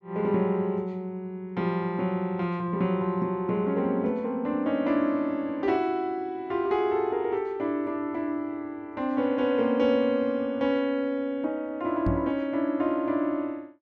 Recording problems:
microphone thump; at 12 s; peak +3 dB vs average level

